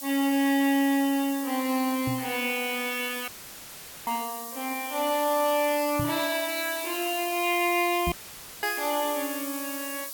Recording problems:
hiss; SNR 8 dB
microphone thump; at 2 s, at 6 s and at 8 s; peak -1 dB vs average level
audio cutting out; at 3.5 s for 1 s and at 8 s for 0.5 s; filled with static

